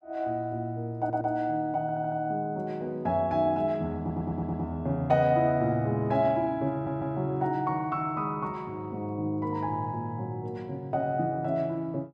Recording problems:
audio stuttering; 4 times, first at 1 s

